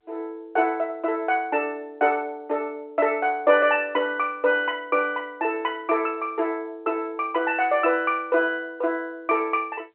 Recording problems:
phone line; 300 Hz to 3.5 kHz, G.711

